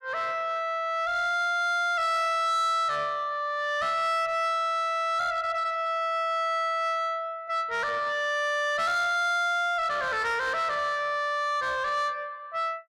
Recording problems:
distortion; soft clipping, signal-to-distortion ratio 11 dB

